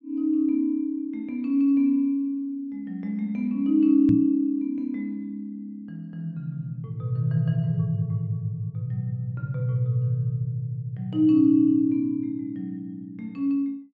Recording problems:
knock on the microphone; at 4 s; peak +3 dB vs average level

